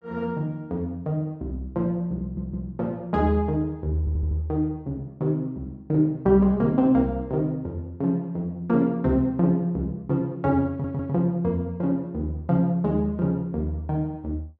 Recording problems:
audio stuttering; at 2 s, at 4 s and at 11 s

